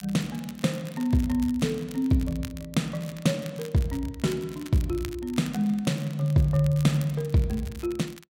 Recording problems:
crackle; vinyl, SNR 20 dB

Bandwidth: 16 kHz